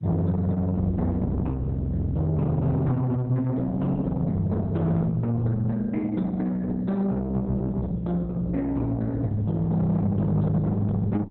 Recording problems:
lossy compression; Opus, log-spectral distance 2 dB
distorted audio; soft clipping, signal-to-distortion ratio 7 dB

